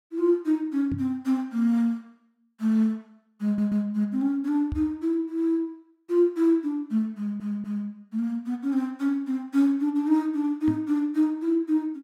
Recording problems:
microphone bump; at 1 s, at 4.5 s and at 11 s; peak -2 dB vs average level
stutter; at 3.5 s and at 7 s

